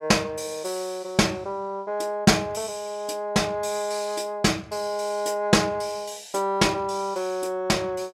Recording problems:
none

